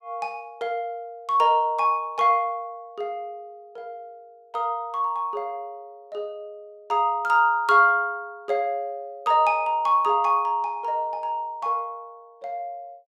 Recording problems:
none

